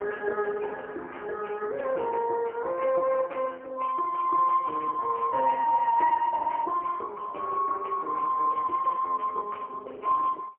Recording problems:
telephone audio; 340 Hz to 2.3 kHz, AMR-NB, then MP3

